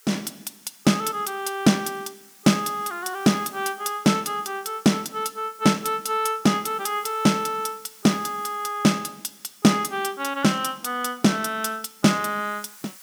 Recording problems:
background hiss; SNR 24 dB

